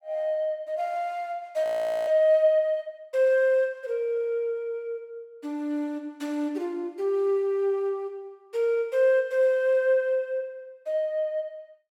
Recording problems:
frozen audio; at 1.5 s

